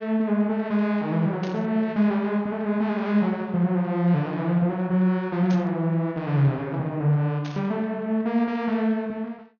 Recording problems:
treble missing; nothing above 6.7 kHz
static burst; at 1.5 s, at 5.5 s and at 7.5 s; peak -12 dB vs average level

